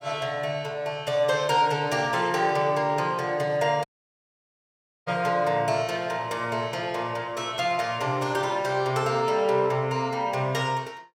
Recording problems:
dropout; at 4 s for 1 s

